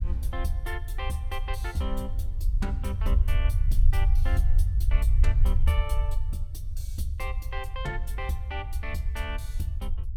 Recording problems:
low-frequency rumble; below 66 Hz, SNR -7 dB

